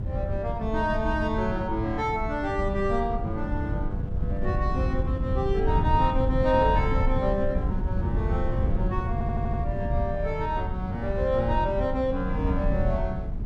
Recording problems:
wind on the microphone; below 120 Hz, SNR 1 dB
audio stuttering; at 9 s

